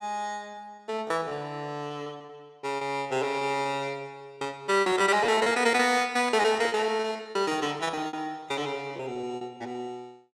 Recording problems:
packet loss; 18% of the sound replaced, filled with repeated pitch periods

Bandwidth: 17 kHz